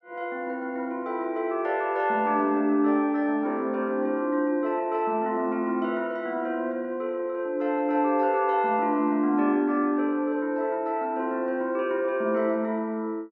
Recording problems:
none

